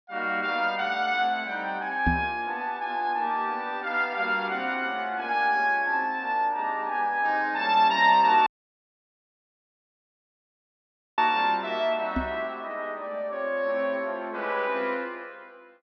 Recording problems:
treble missing; nothing above 6 kHz
microphone thump; at 2 s and at 12 s; peak +3 dB vs average level
audio cutting out; at 8.5 s for 2.5 s

